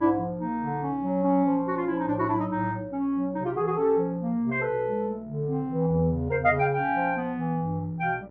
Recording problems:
low-pass filter; nothing above 8 kHz
electrical hum; 60 Hz, harmonics up to 1.4 kHz, SNR 24 dB

